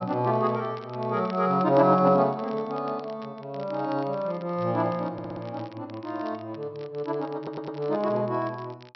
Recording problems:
treble missing; nothing above 5.7 kHz
crackle; vinyl, SNR 26 dB
stutter; at 5 s and at 7.5 s

